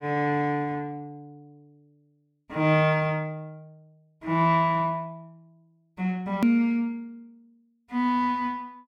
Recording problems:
click at an edit; at 6.5 s

